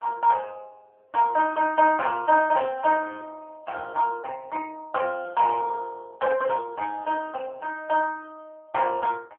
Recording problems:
telephone audio; 280 Hz to 2.8 kHz, AMR-NB

